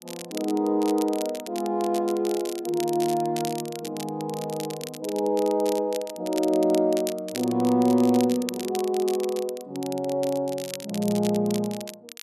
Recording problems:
crackling; vinyl, SNR 14 dB

